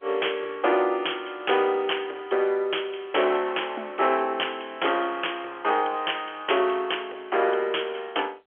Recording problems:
telephone audio; 320 Hz to 3.3 kHz, G.711
distorted audio; hard clipping, signal-to-distortion ratio 13 dB

